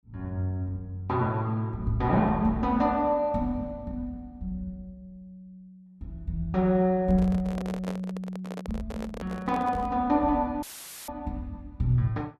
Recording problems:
handling noise; from 7 to 10 s; peak -5 dB vs average level
audio cutting out; at 11 s; filled with static

